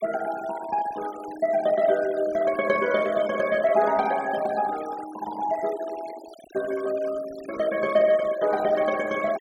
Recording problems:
noise reduction artefacts; signal-to-artefact ratio 17 dB

